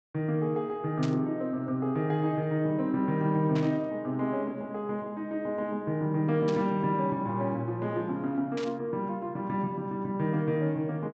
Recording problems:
low-pass filter; nothing above 8 kHz
burst of static; 4 times, first at 1 s; peak -7 dB vs average level

